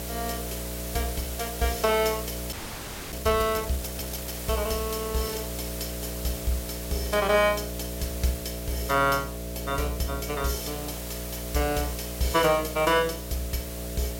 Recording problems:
electrical hum; 60 Hz, harmonics up to 660 Hz, SNR 9 dB
background hiss; slope -1 dB per octave, SNR 9 dB
frozen audio; at 2.5 s for 0.5 s

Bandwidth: 16.5 kHz